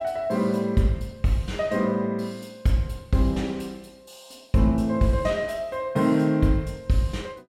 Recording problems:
none

